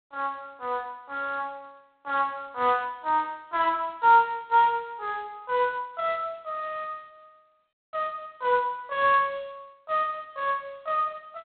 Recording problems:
phone line; 300 Hz to 3.7 kHz, G.726

